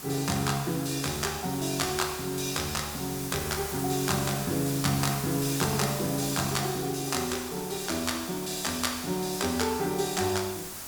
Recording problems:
hiss; slope -2 dB per octave, SNR 8 dB

